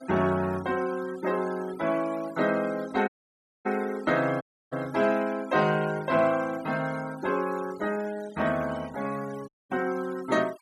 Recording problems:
denoising artefacts; signal-to-artefact ratio 19 dB
audio cutting out; at 3 s for 0.5 s, at 4.5 s and at 9.5 s

